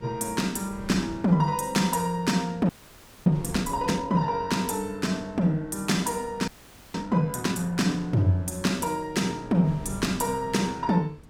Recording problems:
wind on the microphone; below 240 Hz, SNR 19 dB
audio freezing; at 2.5 s for 0.5 s and at 6.5 s

